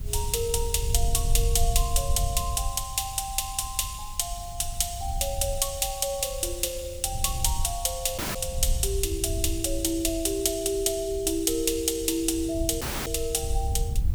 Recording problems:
background hiss; slope -1 dB per octave, SNR 25 dB
wind noise; below 72 Hz, SNR 7 dB
dropout; at 8 s and at 13 s

